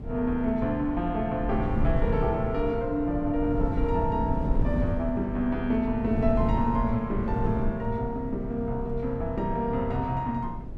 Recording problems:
wind on the microphone; below 140 Hz, SNR 5 dB

